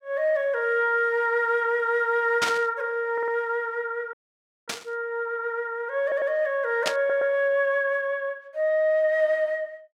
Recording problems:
static burst; at 2.5 s, at 4.5 s and at 7 s; peak +3 dB vs average level
stutter; at 3 s, at 6 s and at 7 s
frozen audio; at 4 s for 0.5 s

